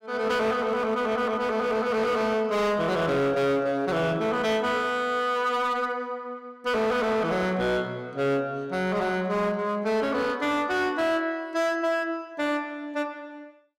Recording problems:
distorted audio; hard clipping, signal-to-distortion ratio 11 dB

